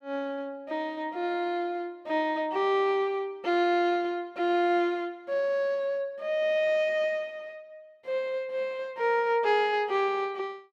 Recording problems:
none

